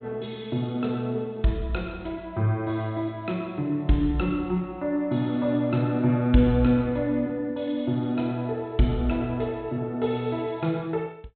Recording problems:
treble missing; nothing above 4 kHz

